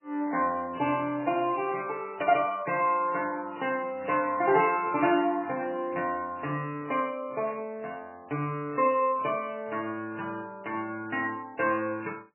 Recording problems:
lossy codec; MP3, log-spectral distance 3 dB, nothing above 2.8 kHz
burst of static; 4 times, first at 1.5 s; peak -13 dB vs average level

